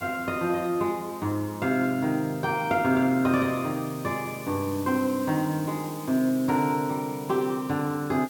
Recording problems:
background hiss; slope +1 dB per octave, SNR 18 dB

